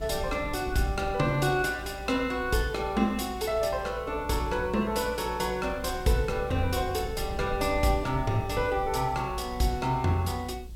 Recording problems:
hiss; slope +2 dB per octave, SNR 29 dB
rumble; below 84 Hz, SNR 12 dB

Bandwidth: 16.5 kHz